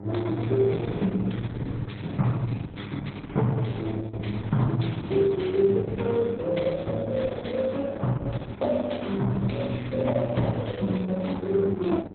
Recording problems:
codec artefacts; MP3, then Opus, log-spectral distance 3 dB, nothing above 4 kHz
electrical hum; 50 Hz, harmonics up to 1 kHz, SNR 15 dB

